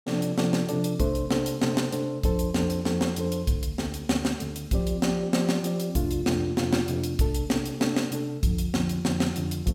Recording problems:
none

